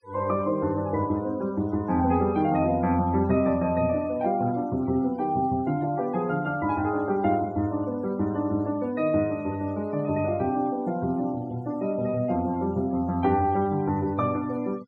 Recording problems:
noise reduction artefacts; signal-to-artefact ratio 24 dB

